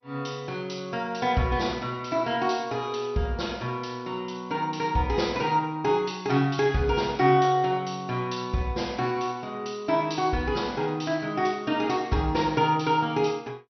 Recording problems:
lossy codec; MP2, log-spectral distance 3 dB, nothing above 6 kHz

